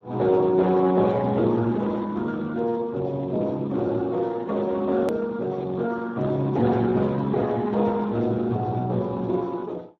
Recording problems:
lossy codec; Speex, log-spectral distance 3 dB, nothing above 13.1 kHz
hard cut with a click; at 5 s

